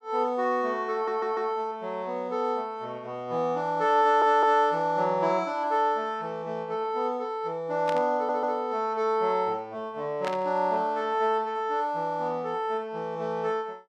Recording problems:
stutter; at 1 s, at 4 s and at 8 s
burst of static; at 8 s and at 10 s; peak -4 dB vs average level

